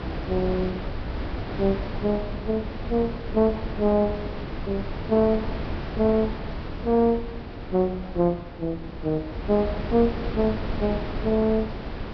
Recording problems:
lossy compression; Vorbis, log-spectral distance 2 dB, nothing above 10.7 kHz
wind on the microphone; below 450 Hz, SNR 8 dB

